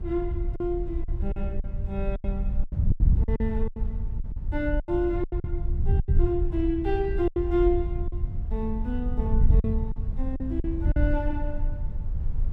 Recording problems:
low-frequency rumble; below 54 Hz, SNR 5 dB
wind on the microphone; below 82 Hz, SNR 0 dB
lost packets; 10% of the sound replaced, filled with silence

